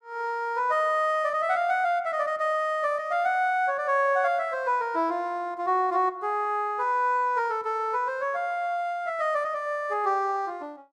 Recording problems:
none

